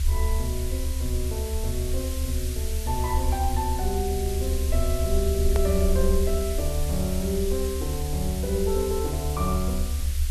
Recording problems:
hiss; SNR 7 dB
low-frequency rumble; below 72 Hz, SNR -1 dB
hard cut with a click; at 5.5 s

